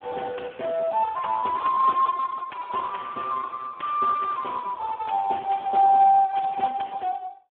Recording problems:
telephone audio; 260 Hz to 2.1 kHz, Speex

